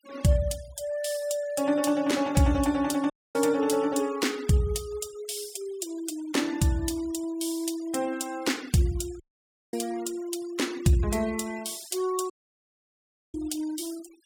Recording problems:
noise reduction artefacts; signal-to-artefact ratio 21 dB
dropout; at 3 s, at 9 s for 0.5 s and at 12 s for 1 s

